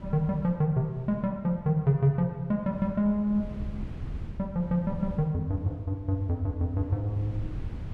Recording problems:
wind on the microphone; below 130 Hz, SNR 14 dB

